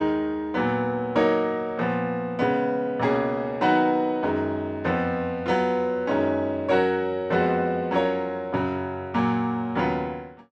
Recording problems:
none

